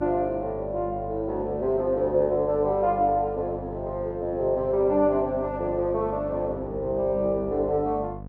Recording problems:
mains hum; 50 Hz, harmonics up to 750 Hz, SNR 15 dB

